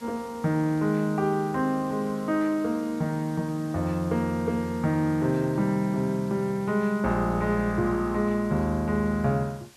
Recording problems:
hiss; slope -2 dB per octave, SNR 24 dB

